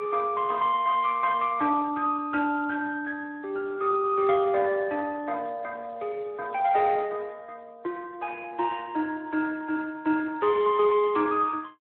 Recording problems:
telephone audio; 260 Hz to 3.2 kHz, Speex

